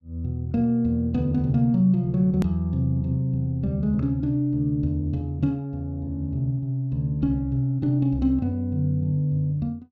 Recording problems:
edit click; at 2.5 s

